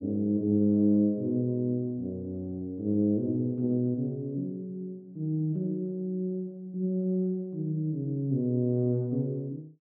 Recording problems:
none

